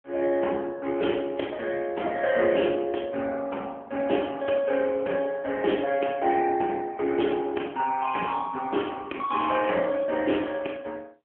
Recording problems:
phone line; 240 Hz to 3.3 kHz, AMR-NB

